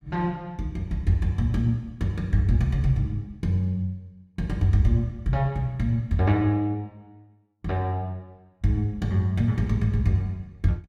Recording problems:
none

